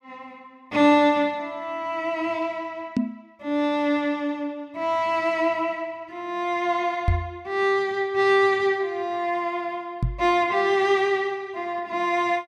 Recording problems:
microphone bump; at 3 s, at 7 s and at 10 s; peak +4 dB vs average level

